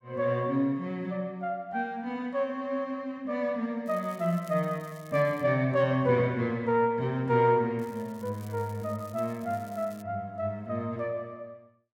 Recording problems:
crackling; from 4 to 5.5 s and from 8 to 10 s; loose cable, SNR 25 dB

